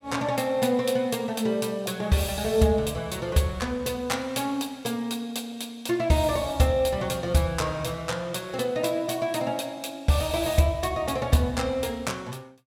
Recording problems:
none

